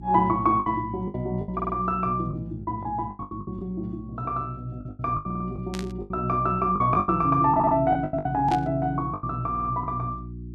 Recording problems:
hum; 60 Hz, harmonics up to 360 Hz, SNR 14 dB
packet loss; 13% of the sound replaced, filled with the last packet
stutter; 4 times, first at 1.5 s
burst of static; at 5.5 s and at 8.5 s; peak -7 dB vs average level

